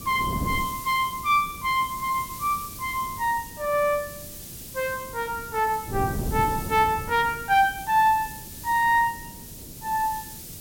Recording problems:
background hiss; slope +5 dB per octave, SNR 14 dB
wind on the microphone; below 270 Hz, SNR 14 dB

